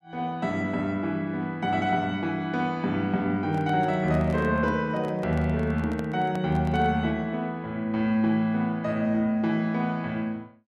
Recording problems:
microphone handling noise; from 3.5 to 7 s; peak -8 dB vs average level

